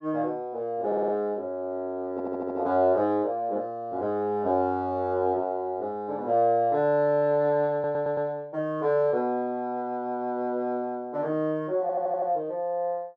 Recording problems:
audio stuttering; 4 times, first at 1 s

